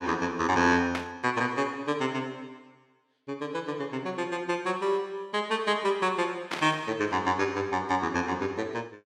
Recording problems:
static burst; at 1 s and at 6.5 s; peak 0 dB vs average level

